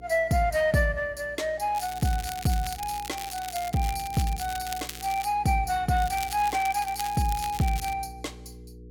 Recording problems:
electrical hum; 60 Hz, harmonics up to 480 Hz, SNR 20 dB
crackle; from 2 to 5.5 s and from 6 to 8 s; loose cable, SNR 12 dB

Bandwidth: 17.5 kHz